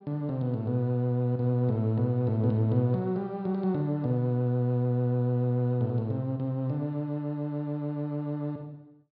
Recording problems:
low-pass filter; nothing above 5.5 kHz

